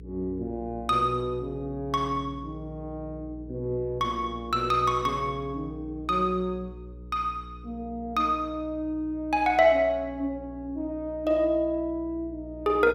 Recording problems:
hum; 60 Hz, harmonics up to 480 Hz, SNR 16 dB

